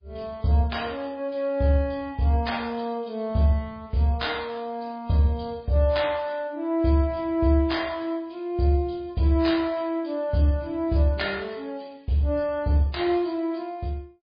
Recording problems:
codec artefacts; MP3, log-spectral distance 3 dB, nothing above 11 kHz

